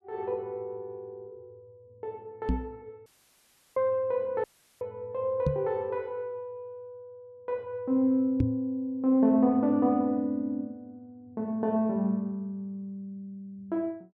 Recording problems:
microphone thump; at 2.5 s, at 5.5 s and at 8.5 s; peak +6 dB vs average level
audio cutting out; at 3 s for 0.5 s and at 4.5 s

